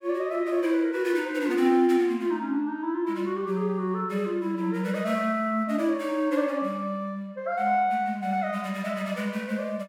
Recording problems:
none

